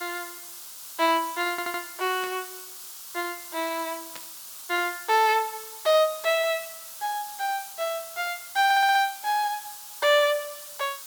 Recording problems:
background hiss; SNR 12 dB
stutter; at 1.5 s and at 8.5 s
burst of static; at 2 s and at 4 s; peak -11 dB vs average level

